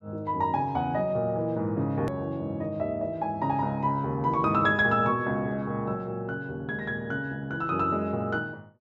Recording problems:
low-pass filter; nothing above 8 kHz
hard cut with a click; at 2 s

